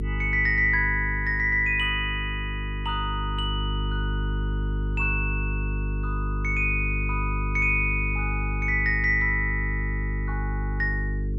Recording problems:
hum; 50 Hz, harmonics up to 450 Hz, SNR 4 dB

